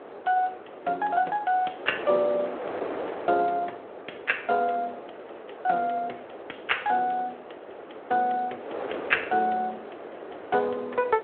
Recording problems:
telephone audio; 320 Hz to 3.4 kHz, Speex
wind on the microphone; below 830 Hz, SNR 11 dB

